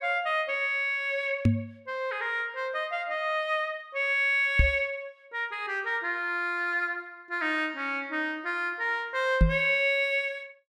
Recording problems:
microphone bump; at 1.5 s, at 4.5 s and at 9.5 s; peak +9 dB vs average level

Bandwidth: 14 kHz